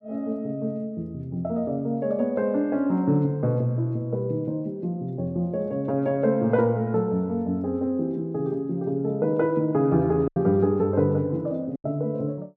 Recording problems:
lost packets; 1.3% of the sound replaced, filled with silence

